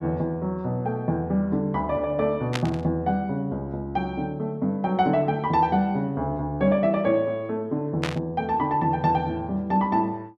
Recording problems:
static burst; at 2.5 s and at 8 s; peak 0 dB vs average level

